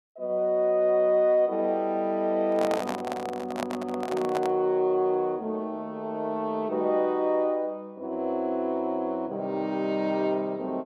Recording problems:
microphone handling noise; from 2.5 to 4.5 s; peak -1 dB vs average level

